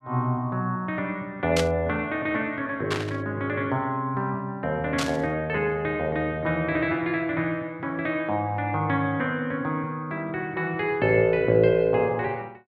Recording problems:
burst of static; at 1.5 s, at 3 s and at 5 s; peak +2 dB vs average level

